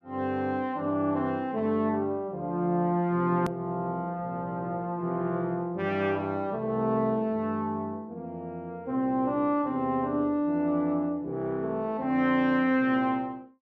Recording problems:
edit click; at 3.5 s

